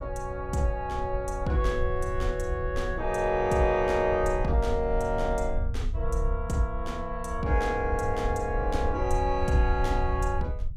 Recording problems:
rumble; below 72 Hz, SNR 6 dB

